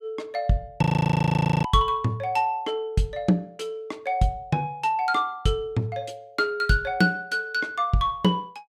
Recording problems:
audio freezing; at 1 s for 1 s

